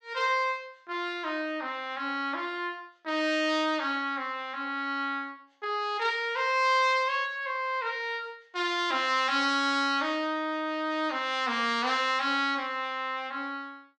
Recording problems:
none

